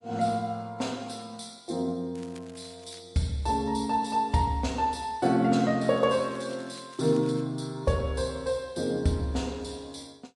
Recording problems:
codec artefacts; MP3, log-spectral distance 3 dB, nothing above 11 kHz
crackling; at 2 s and from 6 to 7.5 s; loose cable, SNR 25 dB

